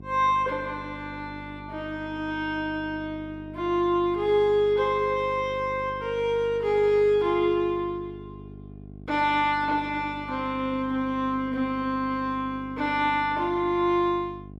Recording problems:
hum; 50 Hz, harmonics up to 750 Hz, SNR 17 dB

